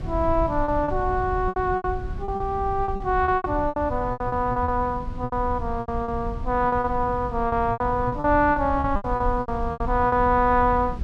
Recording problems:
rumble; below 110 Hz, SNR 10 dB
packet loss; 15% of the sound replaced, filled with repeated pitch periods

